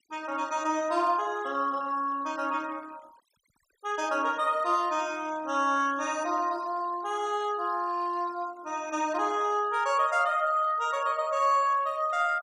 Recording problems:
noise reduction artefacts; signal-to-artefact ratio 22 dB

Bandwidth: 15.5 kHz